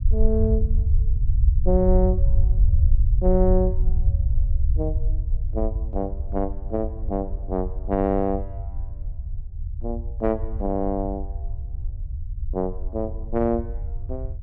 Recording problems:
rumble; below 70 Hz, SNR 0 dB

